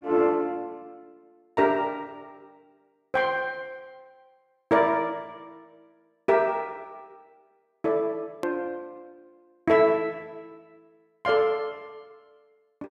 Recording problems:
edit click; at 8.5 s

